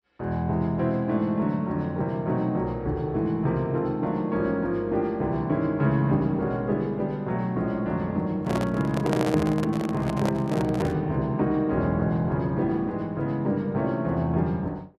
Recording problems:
handling noise; from 8.5 to 11 s; peak +1 dB vs average level

